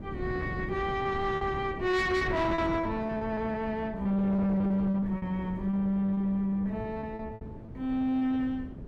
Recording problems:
distorted audio; soft clipping, signal-to-distortion ratio 11 dB
wind on the microphone; below 330 Hz, SNR 10 dB
lost packets; 12% of the sound replaced, filled with repeated pitch periods

